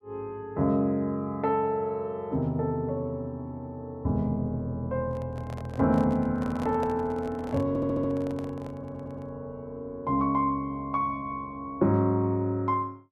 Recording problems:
handling noise; from 5 to 9.5 s; peak -4 dB vs average level
audio stuttering; at 7.5 s and at 8.5 s

